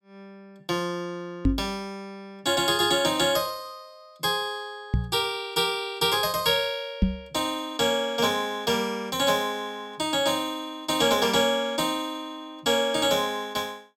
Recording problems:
knock on the microphone; at 1.5 s, at 5 s and at 7 s; peak +7 dB vs average level

